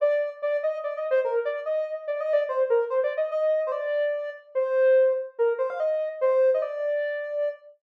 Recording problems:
none

